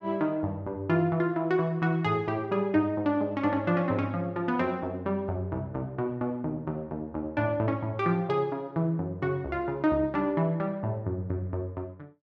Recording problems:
none

